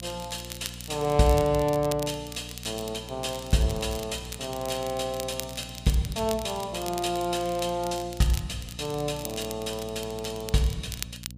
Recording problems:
hum; 60 Hz, harmonics up to 480 Hz, SNR 15 dB
crackling; vinyl, SNR 12 dB

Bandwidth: 15 kHz